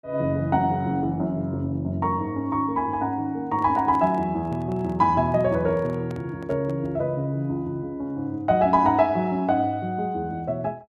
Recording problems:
microphone handling noise; from 3.5 to 7 s; peak -12 dB vs average level

